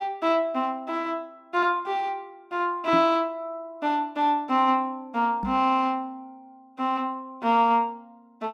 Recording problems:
microphone thump; at 3 s and at 5.5 s; peak -1 dB vs average level

